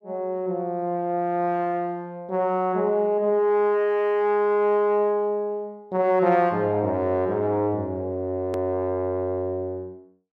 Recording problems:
click at an edit; at 8.5 s

